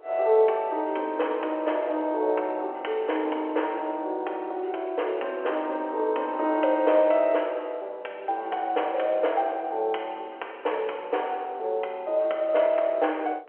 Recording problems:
telephone audio; 340 Hz to 3.2 kHz, G.711
wind on the microphone; below 700 Hz, SNR 24 dB

